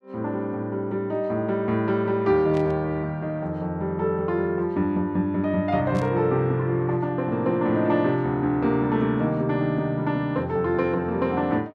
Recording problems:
static burst; at 2.5 s and at 6 s; peak -14 dB vs average level

